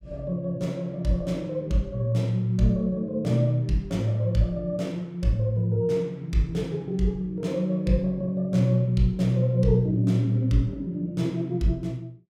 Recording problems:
none

